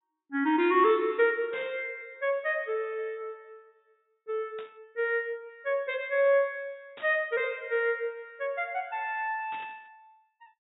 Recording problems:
low-pass filter; nothing above 4 kHz
static burst; 4 times, first at 1.5 s; peak -14 dB vs average level

